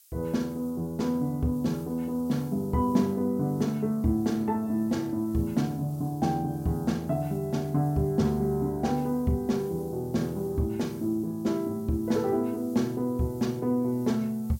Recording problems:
background hiss; slope +6 dB per octave, SNR 25 dB

